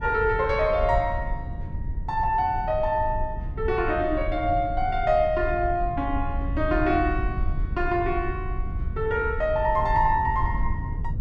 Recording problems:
rumble; below 86 Hz, SNR 7 dB

